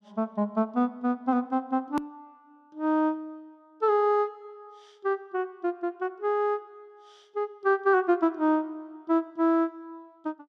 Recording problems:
click at an edit; at 2 s

